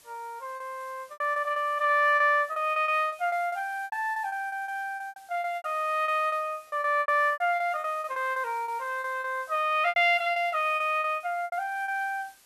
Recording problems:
hiss; slope +1 dB per octave, SNR 27 dB
packet loss; 16% of the sound replaced, filled with repeated pitch periods

